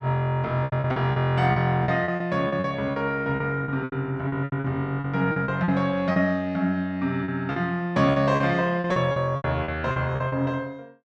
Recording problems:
packet loss; 14% of the sound replaced, filled with repeated pitch periods

